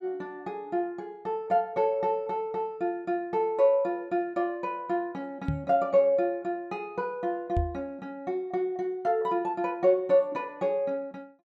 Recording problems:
microphone bump; at 5.5 s and at 7.5 s; peak +3 dB vs average level

